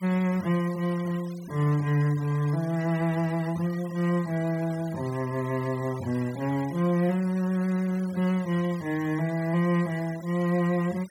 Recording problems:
noise reduction artefacts; signal-to-artefact ratio 20 dB

